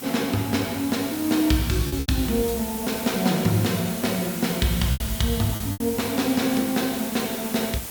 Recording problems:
background hiss; slope -2 dB per octave, SNR 8 dB
lost packets; 4% of the sound replaced, filled with repeated pitch periods

